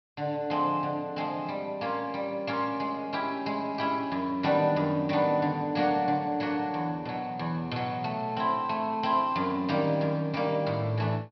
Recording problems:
treble missing; nothing above 5.5 kHz

